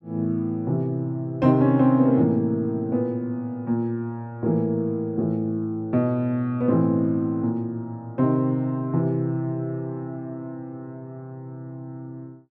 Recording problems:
none

